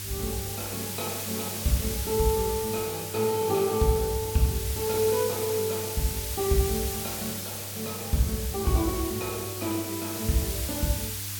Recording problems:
hum; 50 Hz, harmonics up to 300 Hz, SNR 13 dB
background hiss; slope +3 dB per octave, SNR 4 dB

